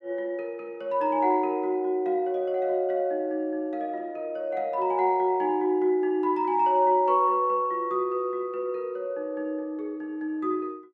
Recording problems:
none

